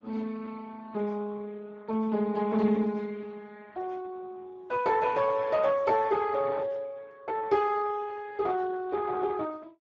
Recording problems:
lossy compression; Speex, log-spectral distance 3 dB

